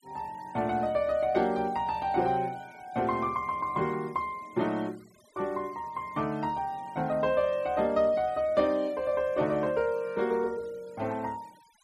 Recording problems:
noise reduction artefacts; signal-to-artefact ratio 26 dB

